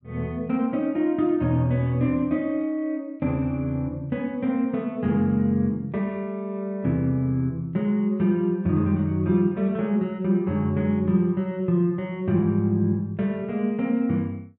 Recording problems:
none

